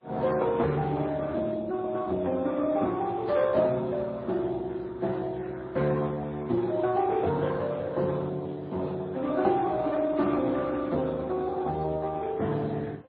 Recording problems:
lossy compression; Speex, then MP3, log-spectral distance 3 dB

